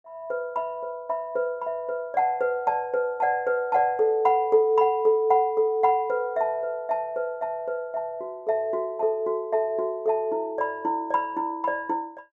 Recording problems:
none

